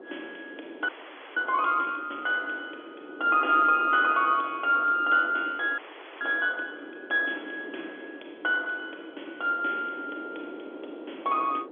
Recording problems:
telephone audio; 260 Hz to 3.6 kHz, G.711
wind noise; below 520 Hz, SNR 18 dB
audio freezing; at 1 s and at 6 s

